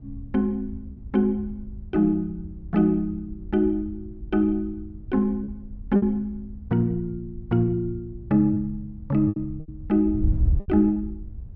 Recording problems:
wind noise; below 86 Hz, SNR 11 dB
lost packets; 3% of the sound replaced, filled with repeated pitch periods

